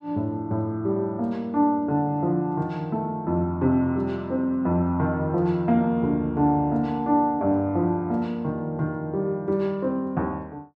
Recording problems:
none

